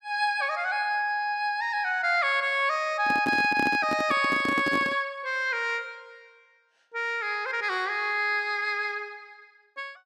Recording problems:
handling noise; from 3 to 5 s; peak -1 dB vs average level

